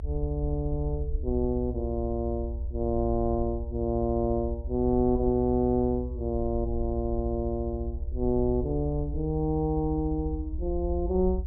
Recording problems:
rumble; below 72 Hz, SNR 6 dB

